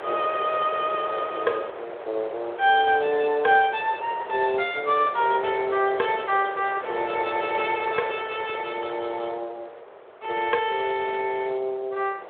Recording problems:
phone line; 340 Hz to 3.5 kHz, Speex
wind noise; below 1 kHz, SNR 11 dB

